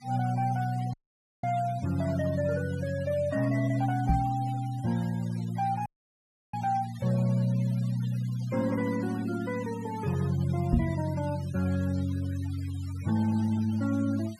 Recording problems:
denoising artefacts; signal-to-artefact ratio 19 dB
audio cutting out; at 1 s and at 6 s for 0.5 s
knock on the microphone; at 4 s and at 11 s; peak +8 dB vs average level

